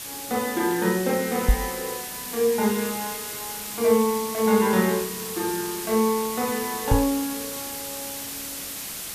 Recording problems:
background hiss; slope 0 dB per octave, SNR 7 dB
knock on the microphone; at 1.5 s and at 7 s; peak +7 dB vs average level

